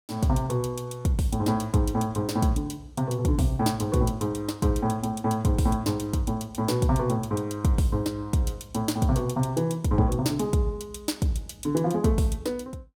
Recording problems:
none

